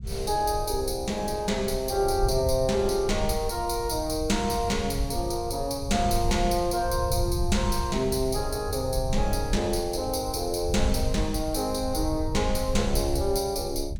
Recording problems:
rumble; below 84 Hz, SNR 7 dB

